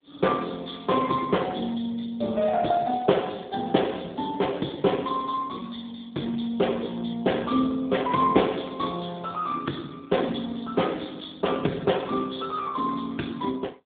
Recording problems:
phone line; 170 Hz to 3.6 kHz, AMR-NB

